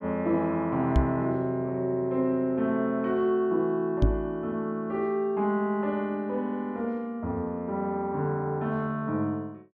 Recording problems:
microphone thump; at 1 s and at 4 s; peak +8 dB vs average level

